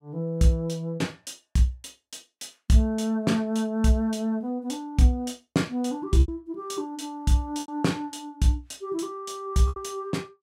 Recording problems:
lost packets; 3% of the sound replaced, filled with repeated pitch periods

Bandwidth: 16 kHz